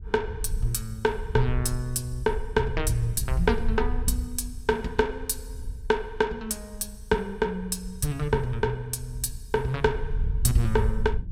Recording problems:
wind on the microphone; below 66 Hz, SNR 6 dB

